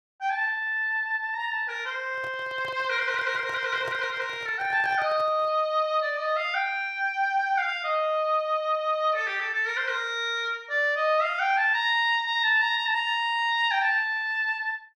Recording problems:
handling noise; from 2 to 5.5 s; peak -10 dB vs average level

